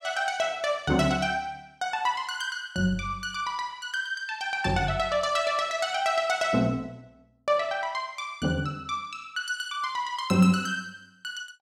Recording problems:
none

